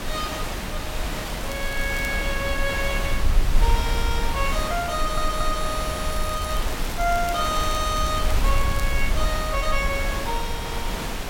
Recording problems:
background hiss; slope -4 dB per octave, SNR 3 dB
rumble; below 52 Hz, strongest tone 20 Hz, SNR 3 dB
crackle; at 1.5 s and from 6 to 9 s; loose cable, SNR 14 dB
stutter; at 5 s

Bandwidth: 16.5 kHz